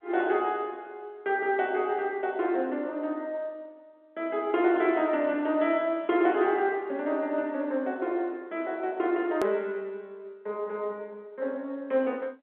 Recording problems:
phone line; 220 Hz to 3.4 kHz, G.711
edit click; at 9.5 s

